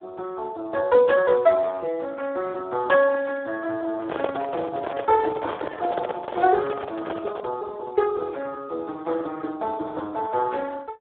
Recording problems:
telephone audio; 340 Hz to 2.2 kHz, Speex
microphone handling noise; from 4 to 7.5 s; peak 0 dB vs average level

